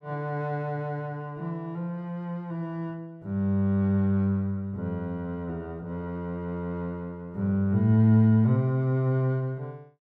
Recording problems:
none

